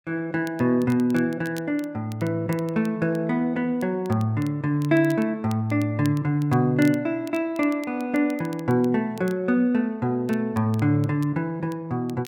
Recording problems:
crackling; vinyl, SNR 24 dB

